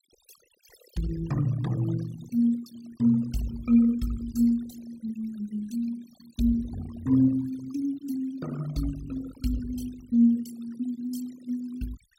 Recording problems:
noise reduction artefacts; signal-to-artefact ratio 17 dB

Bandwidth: 16.5 kHz